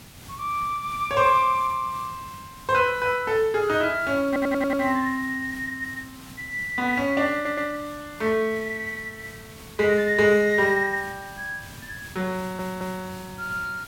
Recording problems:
hiss; slope -2 dB per octave, SNR 19 dB
audio stuttering; at 4.5 s, at 7.5 s and at 12 s

